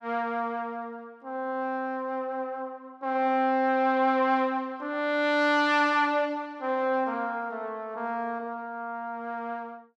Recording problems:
none

